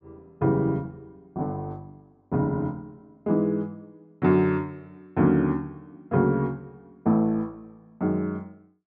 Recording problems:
treble cut off; nothing above 8 kHz

